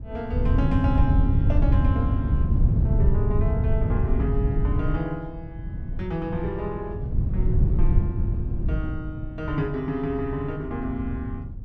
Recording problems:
wind on the microphone; below 120 Hz, SNR -6 dB

